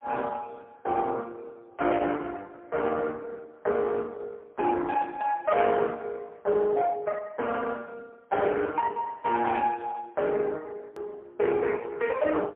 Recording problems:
telephone audio; 300 Hz to 3.4 kHz, AMR-NB, then MP3
distorted audio; hard clipping, signal-to-distortion ratio 14 dB
hard cut with a click; at 11 s

